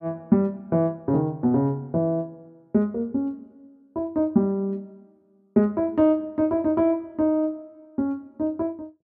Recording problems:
none

